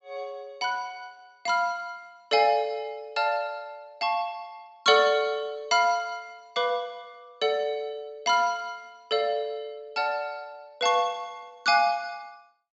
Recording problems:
treble cut off; nothing above 8 kHz

